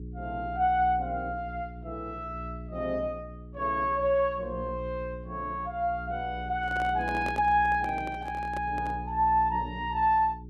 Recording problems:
hum; 60 Hz, harmonics up to 420 Hz, SNR 12 dB
handling noise; from 6.5 to 9 s; peak -6 dB vs average level

